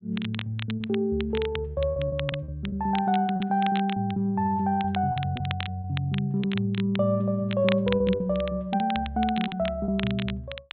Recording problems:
treble cut off; nothing above 4 kHz
crackling; vinyl, SNR 12 dB
packet loss; 8% of the sound replaced, filled with repeated pitch periods

